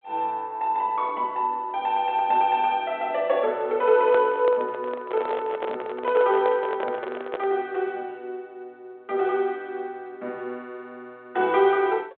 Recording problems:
telephone audio; 300 Hz to 3.6 kHz, G.726
microphone handling noise; from 4 to 7.5 s; peak -2 dB vs average level

